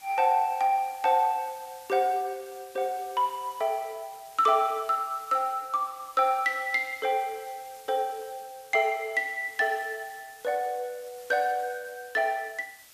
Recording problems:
background hiss; slope +1 dB per octave, SNR 22 dB

